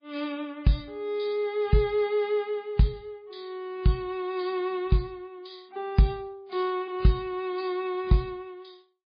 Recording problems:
lossy codec; MP3, log-spectral distance 2 dB, nothing above 4.6 kHz

